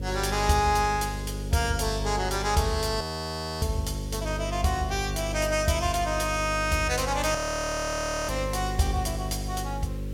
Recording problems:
electrical hum; 50 Hz, harmonics up to 550 Hz, SNR 7 dB
hiss; SNR 27 dB
audio freezing; at 3 s for 0.5 s and at 7.5 s for 1 s

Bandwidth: 16.5 kHz